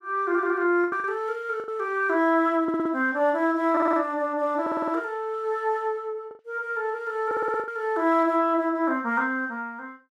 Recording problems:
packet loss; 3% of the sound replaced, filled with the last packet
audio stuttering; 4 times, first at 2.5 s

